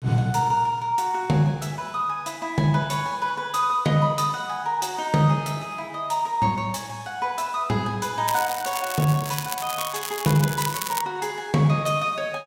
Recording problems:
crackle; from 8.5 to 11 s; loose cable, SNR 8 dB

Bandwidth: 16 kHz